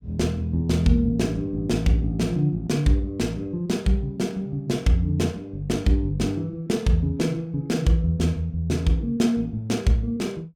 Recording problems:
none

